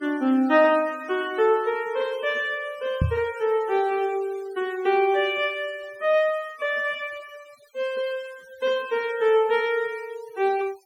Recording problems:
denoising artefacts; signal-to-artefact ratio 23 dB
knock on the microphone; at 3 s; peak +5 dB vs average level

